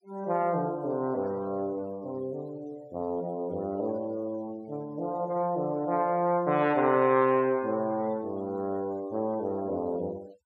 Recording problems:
noise reduction artefacts; signal-to-artefact ratio 27 dB

